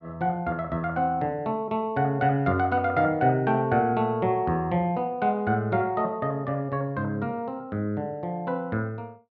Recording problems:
none

